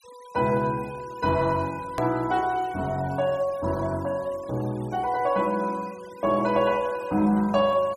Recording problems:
denoising artefacts; signal-to-artefact ratio 23 dB
click at an edit; at 2 s

